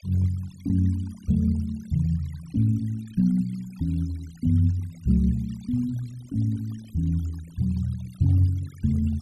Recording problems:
noise reduction artefacts; signal-to-artefact ratio 26 dB

